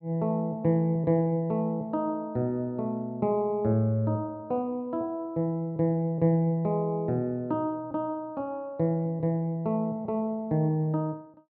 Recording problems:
none

